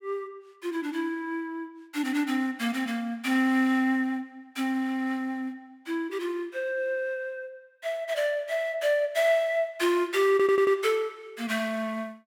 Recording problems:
stutter; at 10 s

